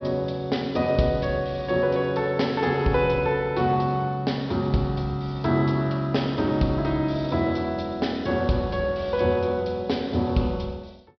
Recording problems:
treble cut off; nothing above 5.5 kHz

